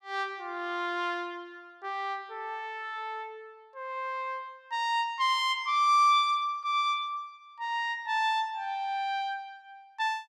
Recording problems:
none

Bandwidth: 15 kHz